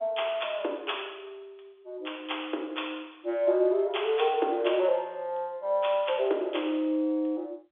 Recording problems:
phone line; 260 Hz to 3.5 kHz, G.711

